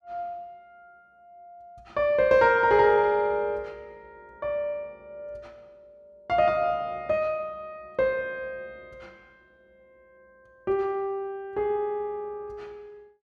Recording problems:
none

